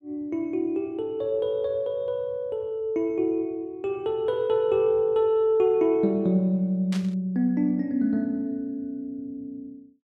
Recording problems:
static burst; at 7 s; peak -9 dB vs average level

